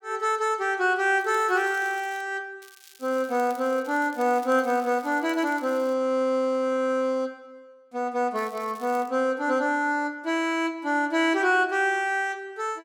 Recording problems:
crackle; from 1 to 2 s, from 2.5 to 6 s and at 8.5 s; loose cable, SNR 25 dB

